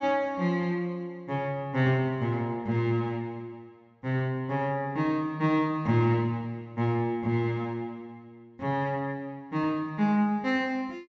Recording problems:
treble missing; nothing above 8 kHz

